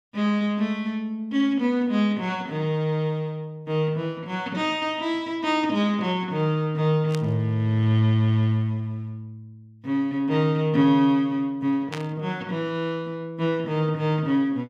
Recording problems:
static burst; at 7 s and at 12 s; peak -5 dB vs average level

